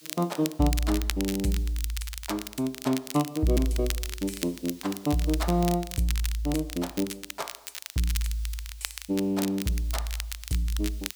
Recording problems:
background hiss; slope +5 dB per octave, SNR 23 dB
crackle; vinyl, SNR 8 dB

